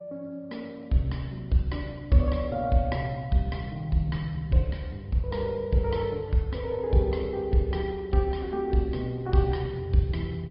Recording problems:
treble cut off; nothing above 5.2 kHz
codec artefacts; Opus, log-spectral distance 2 dB

